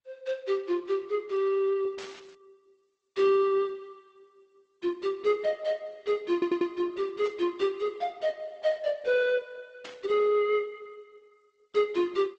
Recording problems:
codec artefacts; G.722, then Opus, log-spectral distance 3 dB, nothing above 8 kHz
static burst; at 2 s, at 7.5 s and at 10 s; peak -9 dB vs average level
audio stuttering; at 6.5 s

